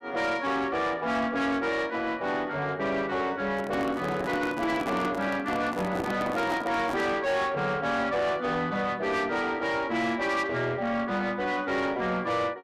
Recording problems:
distorted audio; soft clipping, signal-to-distortion ratio 10 dB
handling noise; from 3.5 to 7 s; peak 0 dB vs average level

